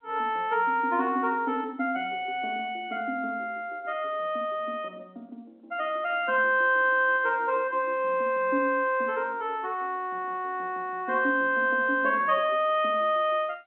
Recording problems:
phone line; 240 Hz to 3.3 kHz, G.711

